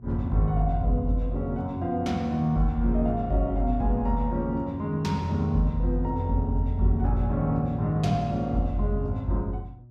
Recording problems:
hum; 60 Hz, harmonics up to 600 Hz, SNR 21 dB

